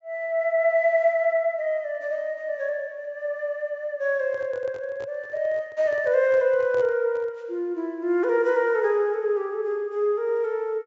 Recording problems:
treble missing; nothing above 7.5 kHz
microphone handling noise; from 4 to 7.5 s; peak -10 dB vs average level

